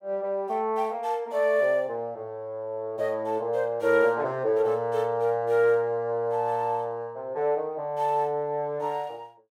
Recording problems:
none

